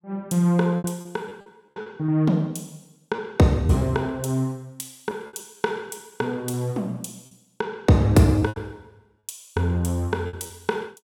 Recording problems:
lost packets; 8% of the sound replaced, filled with repeated pitch periods

